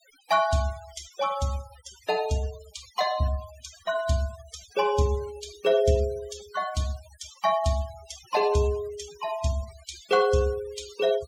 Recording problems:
noise reduction artefacts; signal-to-artefact ratio 18 dB

